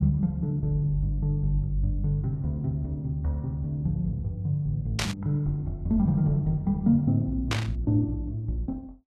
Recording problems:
burst of static; at 5 s and at 7.5 s; peak +3 dB vs average level

